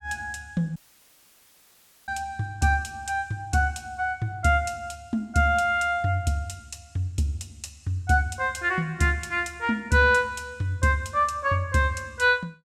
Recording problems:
dropout; at 1 s for 1.5 s

